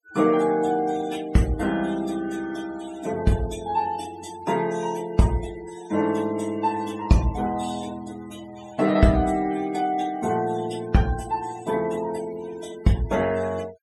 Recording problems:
noise reduction artefacts; signal-to-artefact ratio 19 dB

